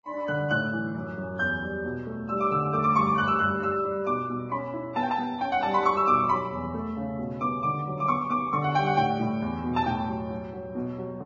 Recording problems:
lossy codec; Vorbis, log-spectral distance 2 dB

